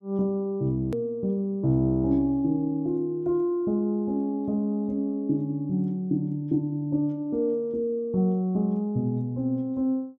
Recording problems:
edit click; at 1 s

